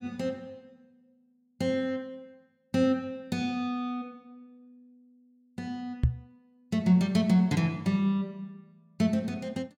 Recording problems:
microphone bump; at 6 s; peak +8 dB vs average level

